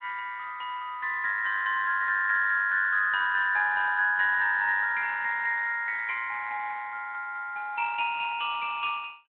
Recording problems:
phone line; 190 Hz to 3.5 kHz, Speex

